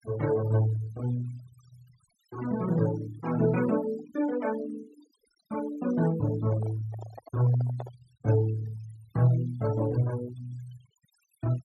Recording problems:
noise reduction artefacts; signal-to-artefact ratio 18 dB
microphone handling noise; from 6.5 to 8 s; peak -8 dB vs average level

